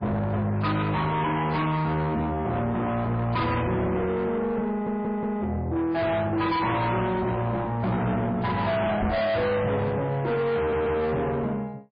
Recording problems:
codec artefacts; MP3, log-spectral distance 2 dB, nothing above 4.6 kHz
distortion; soft clipping, signal-to-distortion ratio 7 dB
audio stuttering; at 4.5 s and at 11 s
microphone thump; at 9 s; peak +2 dB vs average level

